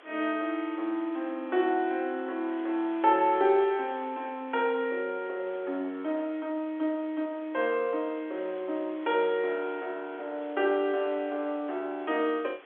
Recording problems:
phone line; 240 Hz to 3.5 kHz, G.711
hiss; SNR 23 dB

